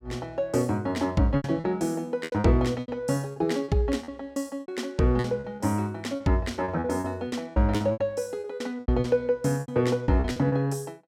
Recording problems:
packet loss; 13% of the sound replaced, filled with repeated pitch periods

